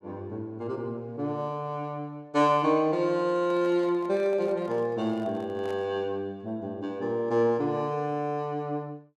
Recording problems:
handling noise; from 3 to 6 s; peak -11 dB vs average level

